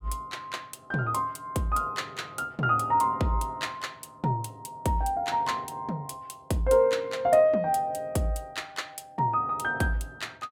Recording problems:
none

